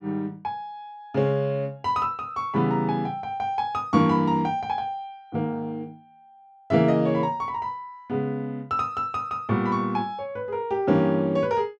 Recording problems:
none

